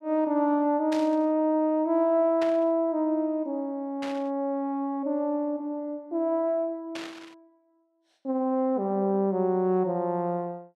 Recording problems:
static burst; 4 times, first at 1 s; peak -7 dB vs average level

